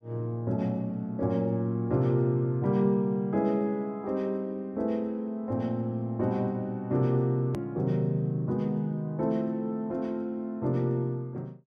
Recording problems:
click at an edit; at 7.5 s

